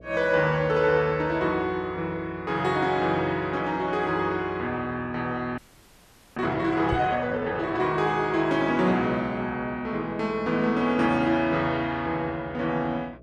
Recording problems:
hum; 60 Hz, harmonics up to 660 Hz, SNR 24 dB
audio freezing; at 5.5 s for 1 s
knock on the microphone; at 7 s; peak 0 dB vs average level

